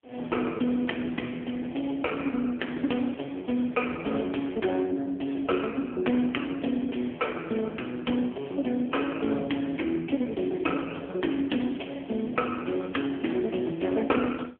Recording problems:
phone line; 220 Hz to 3.3 kHz, AMR-NB

